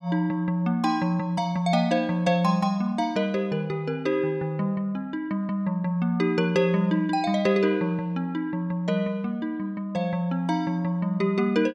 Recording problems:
none

